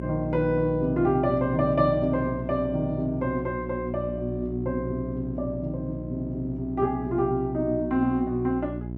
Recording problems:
electrical hum; 60 Hz, harmonics up to 660 Hz, SNR 8 dB

